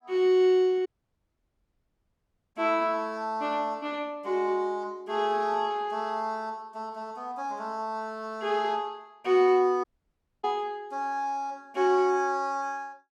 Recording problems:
dropout; at 1 s for 1.5 s and at 10 s for 0.5 s

